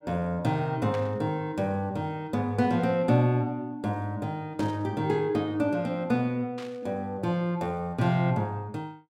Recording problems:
static burst; at 1 s, at 4.5 s and at 6.5 s; peak -9 dB vs average level

